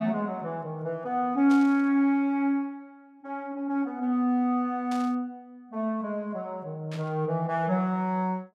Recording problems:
burst of static; at 1.5 s, at 5 s and at 7 s; peak -11 dB vs average level

